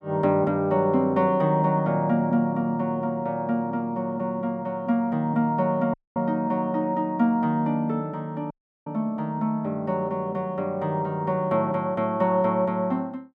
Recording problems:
audio cutting out; at 6 s and at 8.5 s

